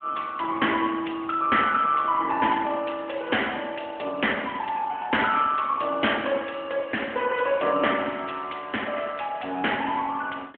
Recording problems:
telephone audio; 240 Hz to 3.3 kHz, AMR-NB

